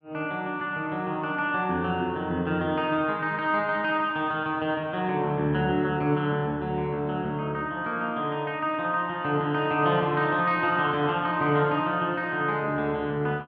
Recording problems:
none

